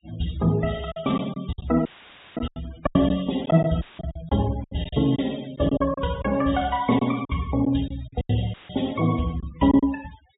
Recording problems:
low-pass filter; nothing above 4 kHz
denoising artefacts; signal-to-artefact ratio 20 dB
packet loss; 10% of the sound replaced, filled with silence
audio cutting out; at 2 s for 0.5 s, at 4 s and at 8.5 s; filled with static

